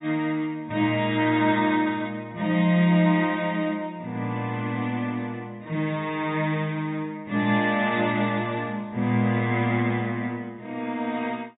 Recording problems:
low-pass filter; nothing above 4 kHz

